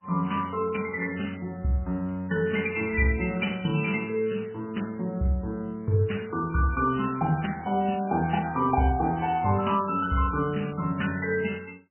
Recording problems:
codec artefacts; MP3, log-spectral distance 6 dB, nothing above 2.7 kHz
crackle; from 6.5 to 9.5 s; loose cable, SNR 27 dB

